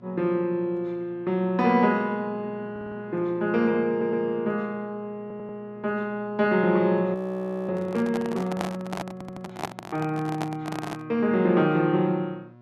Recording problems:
electrical hum; 60 Hz, harmonics up to 1.4 kHz, SNR 24 dB
audio stuttering; 4 times, first at 2.5 s
frozen audio; at 7 s for 0.5 s
handling noise; from 7.5 to 11 s; peak 0 dB vs average level

